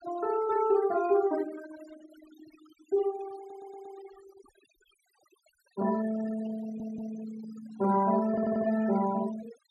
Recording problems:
noise reduction artefacts; signal-to-artefact ratio 15 dB
stutter; at 3.5 s, at 6.5 s and at 8.5 s

